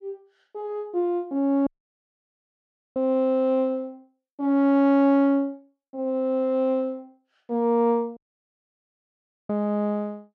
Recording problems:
dropout; at 1.5 s for 1.5 s and at 8 s for 1.5 s

